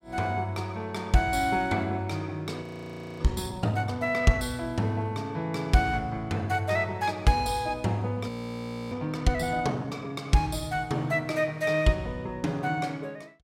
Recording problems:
frozen audio; at 2.5 s for 0.5 s and at 8.5 s for 0.5 s

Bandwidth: 16 kHz